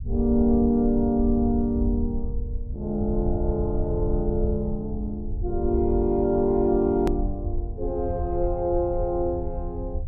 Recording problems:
low-frequency rumble; below 74 Hz, SNR 7 dB
edit click; at 7 s

